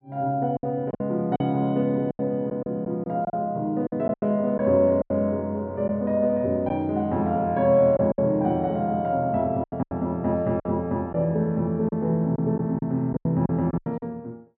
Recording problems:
lost packets; 9% of the sound replaced, filled with silence

